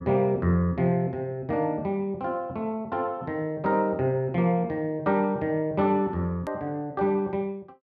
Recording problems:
hard cut with a click; at 6.5 s

